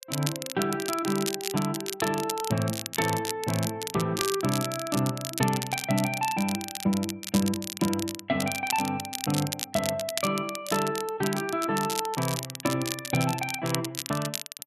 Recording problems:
crackling; vinyl, SNR 5 dB

